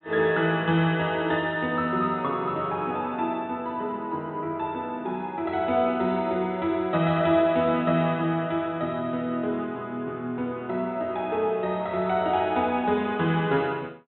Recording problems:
low-pass filter; nothing above 3.9 kHz

